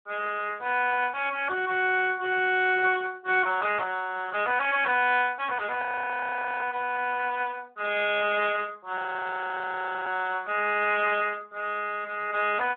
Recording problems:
telephone audio; 280 Hz to 3.5 kHz, Speex
audio freezing; at 6 s for 1 s and at 9 s for 1 s

